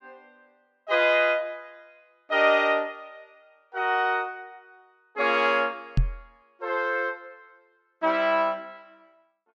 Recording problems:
knock on the microphone; at 6 s; peak +4 dB vs average level

